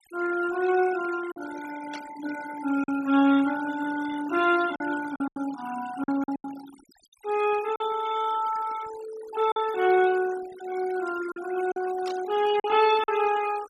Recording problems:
noise reduction artefacts; signal-to-artefact ratio 15 dB
packet loss; 5% of the sound replaced, filled with silence
burst of static; at 2 s and at 12 s; peak -11 dB vs average level

